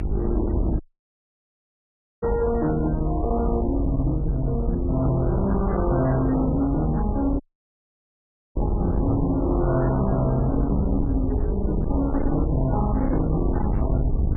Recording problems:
lossy codec; MP3, log-spectral distance 2 dB, nothing above 10.7 kHz
distorted audio; hard clipping, signal-to-distortion ratio 7 dB
hum; 50 Hz, harmonics up to 850 Hz, SNR 13 dB
low-frequency rumble; below 120 Hz, SNR 3 dB
dropout; at 1 s for 1.5 s and at 7.5 s for 1 s
microphone thump; at 2 s, at 5 s and at 9 s; peak +4 dB vs average level

